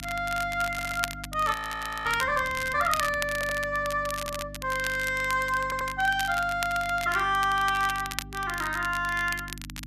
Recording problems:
hum; 50 Hz, harmonics up to 300 Hz, SNR 16 dB
crackle; vinyl, SNR 11 dB
audio stuttering; 4 times, first at 0.5 s
frozen audio; at 1.5 s for 0.5 s

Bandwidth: 14 kHz